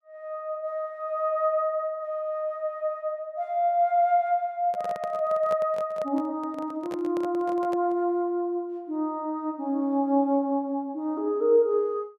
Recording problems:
handling noise; from 4.5 to 8 s; peak -7 dB vs average level

